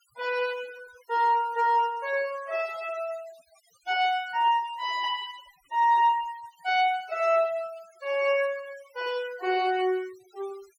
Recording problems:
denoising artefacts; signal-to-artefact ratio 21 dB

